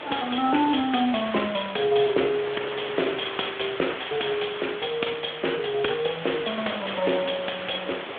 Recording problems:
phone line; 260 Hz to 3.6 kHz, Speex
background hiss; SNR 9 dB
wind on the microphone; below 920 Hz, SNR 16 dB

